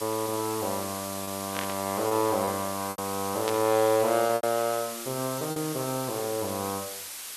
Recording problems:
hiss; slope +2 dB per octave, SNR 7 dB
packet loss; 5% of the sound replaced, filled with repeated pitch periods
static burst; at 1.5 s and at 3.5 s; peak -1 dB vs average level

